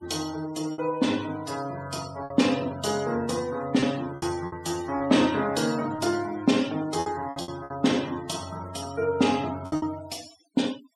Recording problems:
noise reduction artefacts; signal-to-artefact ratio 17 dB
lost packets; 6% of the sound replaced, filled with repeated pitch periods

